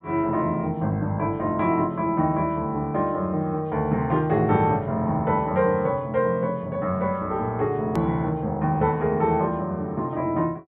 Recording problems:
treble missing; nothing above 4 kHz
click at an edit; at 8 s

